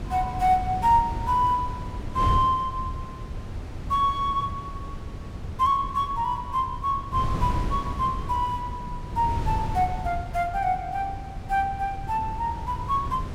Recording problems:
wind on the microphone; below 160 Hz, SNR 8 dB

